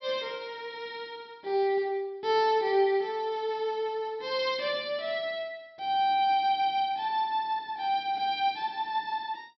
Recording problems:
treble cut off; nothing above 5.8 kHz

